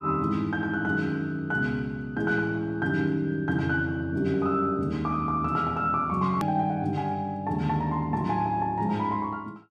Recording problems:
click at an edit; at 6.5 s

